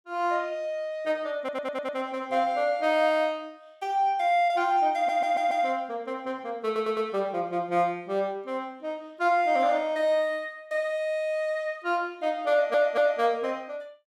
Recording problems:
stutter; 4 times, first at 1.5 s

